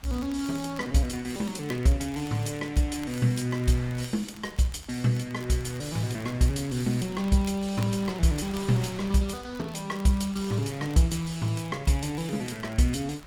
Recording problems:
wind on the microphone; below 2.1 kHz, SNR 20 dB
crackle; vinyl, SNR 23 dB

